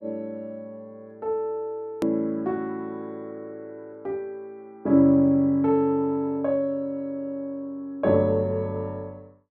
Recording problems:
click at an edit; at 2 s

